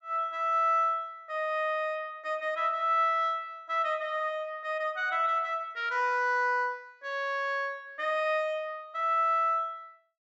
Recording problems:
low-pass filter; nothing above 8 kHz

